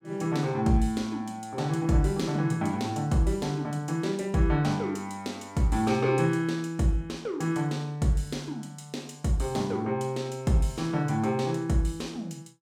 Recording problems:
none

